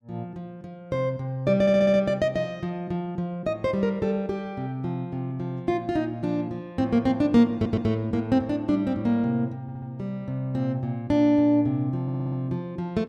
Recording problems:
audio stuttering; 4 times, first at 1.5 s

